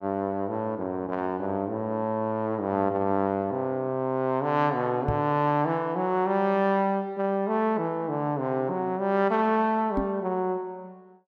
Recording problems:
microphone bump; at 5 s and at 10 s; peak +2 dB vs average level

